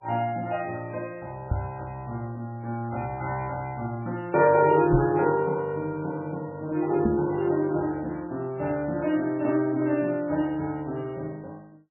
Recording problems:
lossy compression; MP3, log-spectral distance 2 dB, nothing above 2.5 kHz
microphone thump; at 1.5 s, at 5 s and at 7 s; peak +5 dB vs average level

